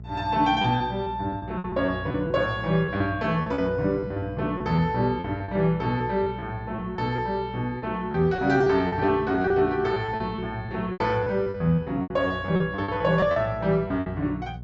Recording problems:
low-pass filter; nothing above 8 kHz
hum; 60 Hz, harmonics up to 480 Hz, SNR 15 dB
packet loss; 12% of the sound replaced, filled with repeated pitch periods

